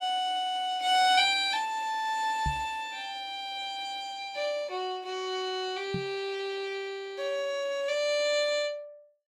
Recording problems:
knock on the microphone; at 2.5 s and at 6 s; peak 0 dB vs average level

